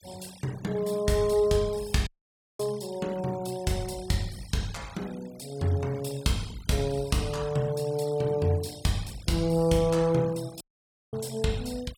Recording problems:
noise reduction artefacts; signal-to-artefact ratio 20 dB
audio cutting out; at 2 s for 0.5 s and at 11 s for 0.5 s

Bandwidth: 17 kHz